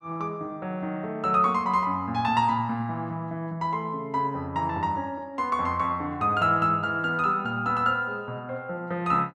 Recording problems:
none

